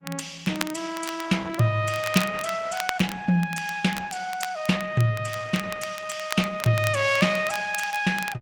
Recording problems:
codec artefacts; Opus, log-spectral distance 4 dB, nothing above 18.3 kHz
crackle; vinyl, SNR 12 dB

